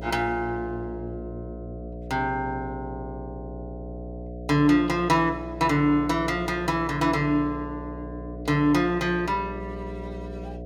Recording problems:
hum; 60 Hz, harmonics up to 720 Hz, SNR 12 dB

